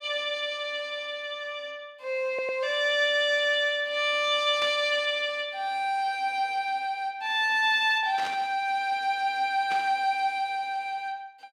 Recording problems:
audio stuttering; at 2.5 s
static burst; at 4.5 s, at 8 s and at 9.5 s; peak -7 dB vs average level

